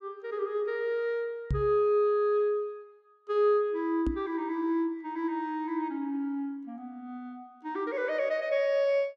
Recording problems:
microphone thump; at 1.5 s and at 4 s; peak +2 dB vs average level

